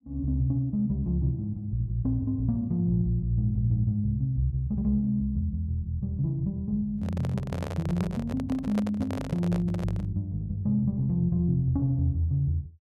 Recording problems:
microphone handling noise; from 7 to 10 s; peak -3 dB vs average level

